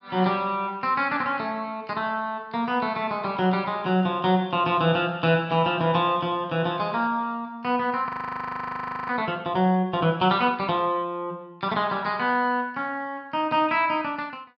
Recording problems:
frozen audio; at 8 s for 1 s

